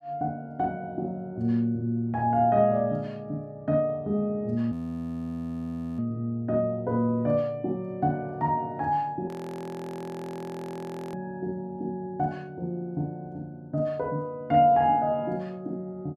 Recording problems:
frozen audio; at 4.5 s for 1.5 s and at 9.5 s for 2 s

